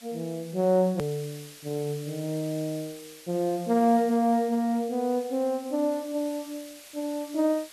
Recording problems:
hiss; slope +2 dB per octave, SNR 19 dB
edit click; at 1 s

